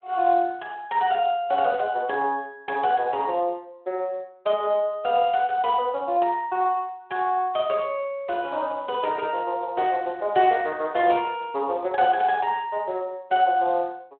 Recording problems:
phone line; 300 Hz to 3.7 kHz, Speex

